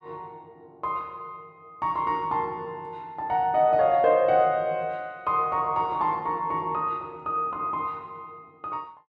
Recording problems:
none

